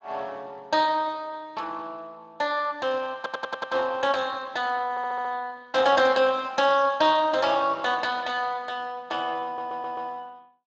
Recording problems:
codec artefacts; Speex, log-spectral distance 3 dB
audio stuttering; at 3 s, at 5 s and at 9.5 s

